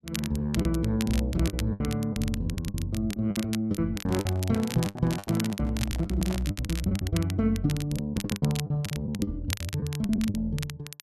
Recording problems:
crackle; vinyl, SNR 11 dB
lost packets; 15% of the sound replaced, filled with the last packet
handling noise; from 4 to 6.5 s; peak -6 dB vs average level

